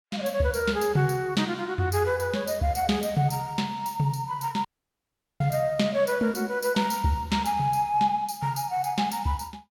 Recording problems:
audio cutting out; at 4.5 s for 1 s

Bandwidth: 18 kHz